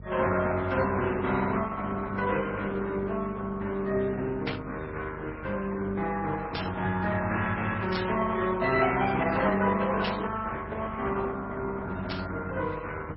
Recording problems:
codec artefacts; Opus, then MP3, log-spectral distance 3 dB, nothing above 5.5 kHz
hum; 50 Hz, harmonics up to 500 Hz, SNR 16 dB
burst of static; 5 times, first at 4.5 s; peak 0 dB vs average level

